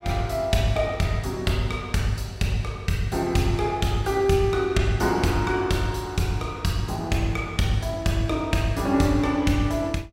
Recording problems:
none

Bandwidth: 16 kHz